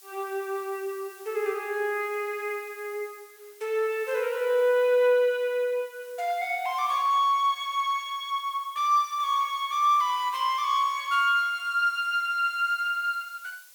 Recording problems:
hiss; slope +3 dB per octave, SNR 24 dB

